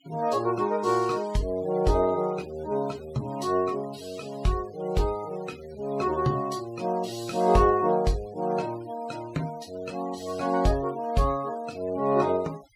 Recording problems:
denoising artefacts; signal-to-artefact ratio 22 dB

